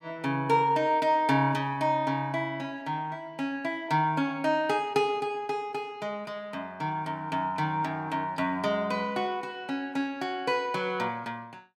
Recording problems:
none

